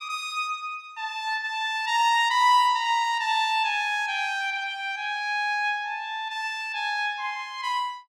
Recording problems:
none

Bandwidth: 16.5 kHz